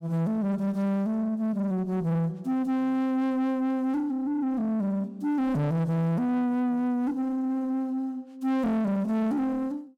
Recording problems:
distorted audio; soft clipping, signal-to-distortion ratio 11 dB

